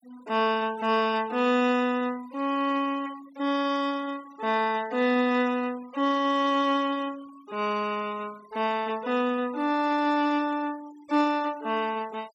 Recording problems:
denoising artefacts; signal-to-artefact ratio 23 dB

